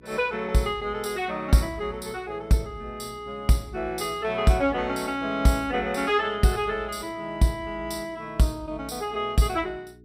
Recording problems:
electrical hum; 60 Hz, harmonics up to 420 Hz, SNR 25 dB

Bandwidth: 15.5 kHz